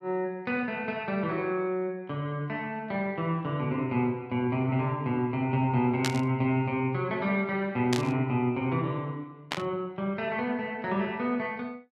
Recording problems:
static burst; at 6 s, at 8 s and at 9.5 s; peak +4 dB vs average level

